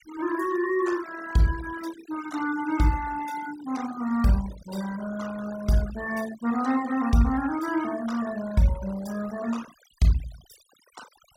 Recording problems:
noise reduction artefacts; signal-to-artefact ratio 16 dB

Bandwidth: 16.5 kHz